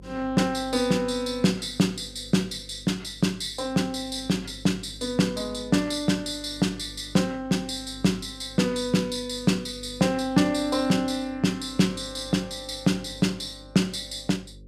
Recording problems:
hum; 50 Hz, harmonics up to 550 Hz, SNR 21 dB

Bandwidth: 15 kHz